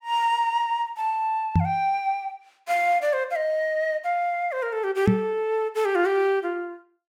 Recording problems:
microphone thump; at 1.5 s and at 5 s; peak +8 dB vs average level

